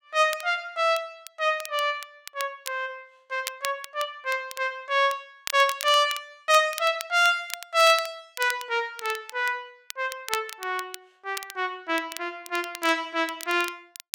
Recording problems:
crackling; vinyl, SNR 14 dB

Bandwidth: 16.5 kHz